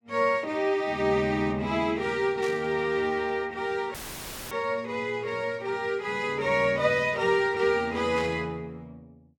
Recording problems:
burst of static; at 2.5 s and at 8 s; peak -10 dB vs average level
dropout; at 4 s for 0.5 s; filled with static

